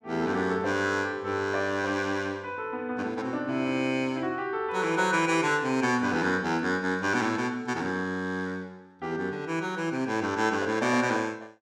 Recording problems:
none

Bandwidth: 16 kHz